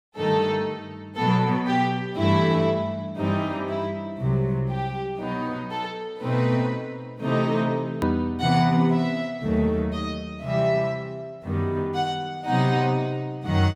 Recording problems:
edit click; at 8 s

